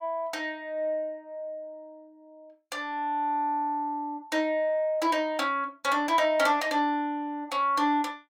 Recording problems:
none

